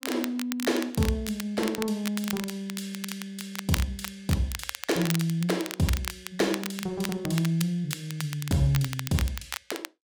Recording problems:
crackle; vinyl, SNR 8 dB

